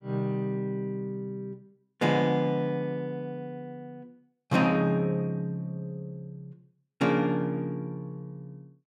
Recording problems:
none

